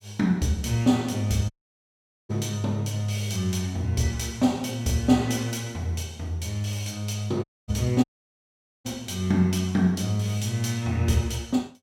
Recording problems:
dropout; at 1.5 s for 1 s, at 7.5 s and at 8 s for 1 s

